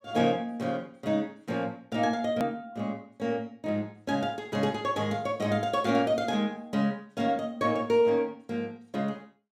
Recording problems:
edit click; at 2.5 s

